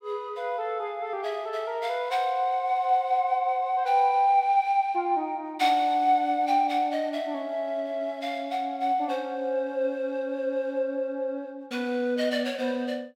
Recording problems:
none

